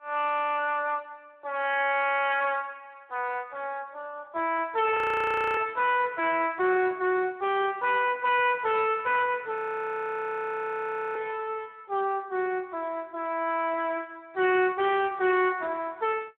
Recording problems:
phone line; 320 Hz to 3.3 kHz, Speex
distorted audio; hard clipping, signal-to-distortion ratio 11 dB
audio freezing; at 5 s for 0.5 s and at 9.5 s for 1.5 s

